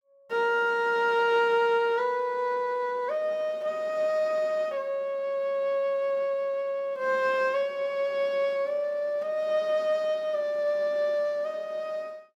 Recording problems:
none

